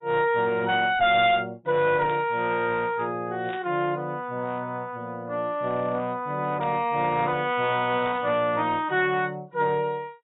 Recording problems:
codec artefacts; AAC, log-spectral distance 2 dB, nothing above 3.2 kHz
distorted audio; hard clipping, uneven, signal-to-distortion ratio 10 dB
static burst; 4 times, first at 2 s; peak -12 dB vs average level

